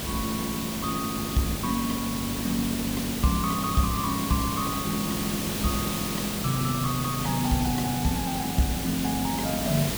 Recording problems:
electrical hum; 50 Hz, harmonics up to 1.1 kHz, SNR 12 dB
hiss; SNR 2 dB

